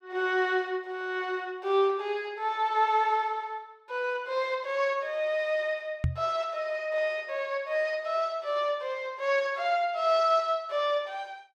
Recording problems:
knock on the microphone; at 6 s; peak +4 dB vs average level

